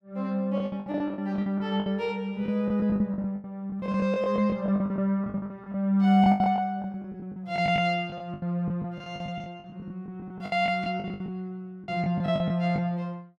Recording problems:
packet loss; 18% of the sound replaced, filled with the last packet

